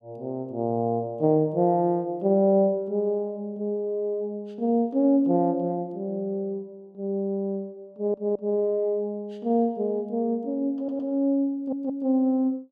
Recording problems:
stutter; at 8 s, at 11 s and at 12 s

